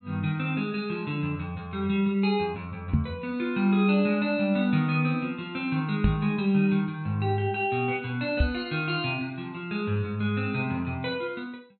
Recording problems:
microphone bump; at 3 s, at 6 s and at 8.5 s; peak +7 dB vs average level

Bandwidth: 4 kHz